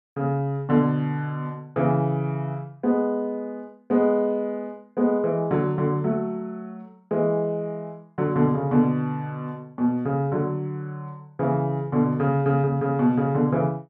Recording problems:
none

